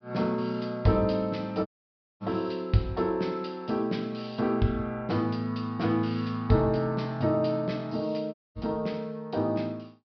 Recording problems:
low-pass filter; nothing above 5.5 kHz
dropout; at 1.5 s for 0.5 s and at 8.5 s

